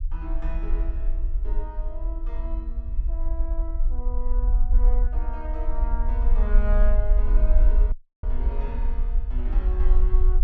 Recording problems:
low-frequency rumble; below 44 Hz, SNR -12 dB
audio cutting out; at 8 s

